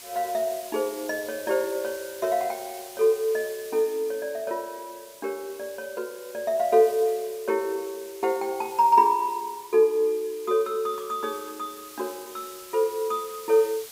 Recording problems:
background hiss; slope +1 dB per octave, SNR 17 dB

